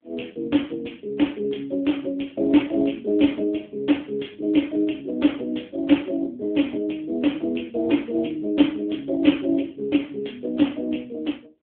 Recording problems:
telephone audio; 170 Hz to 3.4 kHz, AMR-NB

